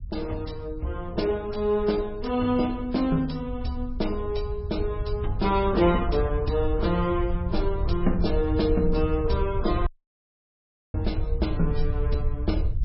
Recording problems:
lossy codec; MP3, log-spectral distance 2 dB, nothing above 5.5 kHz
low-frequency rumble; below 78 Hz, SNR 5 dB
dropout; at 10 s for 1 s

